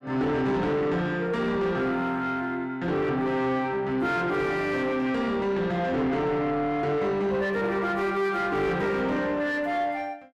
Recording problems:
distortion; soft clipping, signal-to-distortion ratio 11 dB

